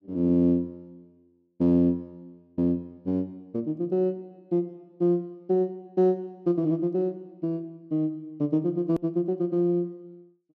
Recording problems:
click at an edit; at 9 s

